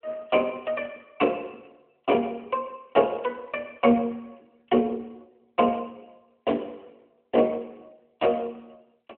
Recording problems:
telephone audio; 190 Hz to 3.4 kHz, AMR-NB

